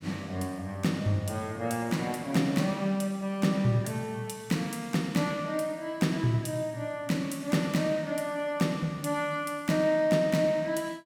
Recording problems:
none

